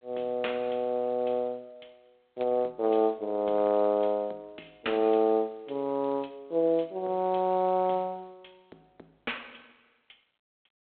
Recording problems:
phone line; 300 Hz to 3.7 kHz, G.726

